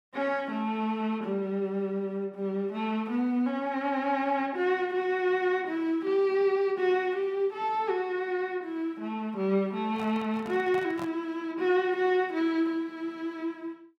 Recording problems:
microphone handling noise; from 10 to 11 s; peak -8 dB vs average level

